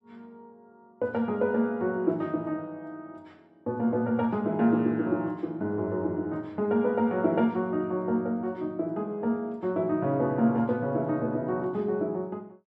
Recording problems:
none

